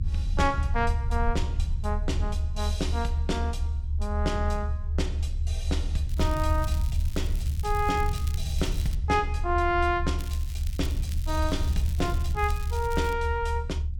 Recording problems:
rumble; below 76 Hz, SNR -1 dB
crackling; from 6 to 9 s and from 10 to 13 s; loose cable, SNR 15 dB

